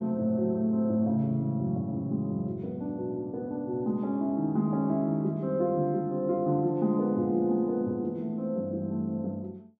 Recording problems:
none

